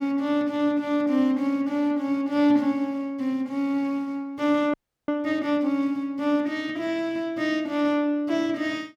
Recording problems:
frozen audio; at 4.5 s

